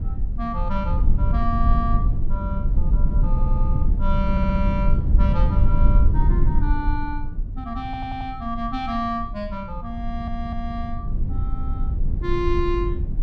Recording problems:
rumble; below 68 Hz, SNR -5 dB
stutter; 4 times, first at 3.5 s

